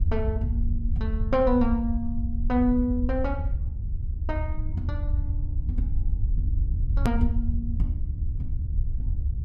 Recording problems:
low-frequency rumble; below 80 Hz, SNR 0 dB
edit click; at 7 s

